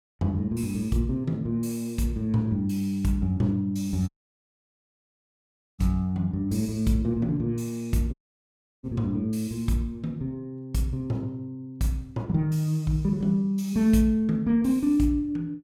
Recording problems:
audio cutting out; at 4 s for 1.5 s and at 8 s for 0.5 s

